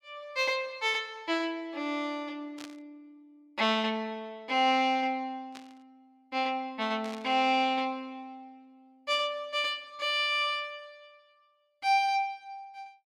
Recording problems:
static burst; at 2.5 s, at 5.5 s and at 7 s; peak -11 dB vs average level

